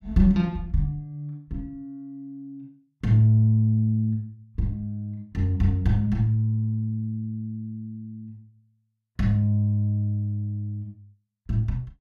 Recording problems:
none

